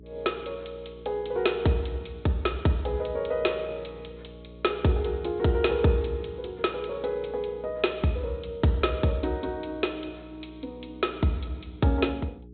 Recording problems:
low-pass filter; nothing above 4 kHz
electrical hum; 60 Hz, harmonics up to 420 Hz, SNR 20 dB

